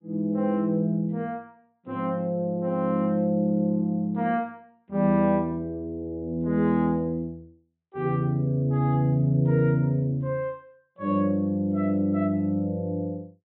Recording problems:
treble cut off; nothing above 4 kHz

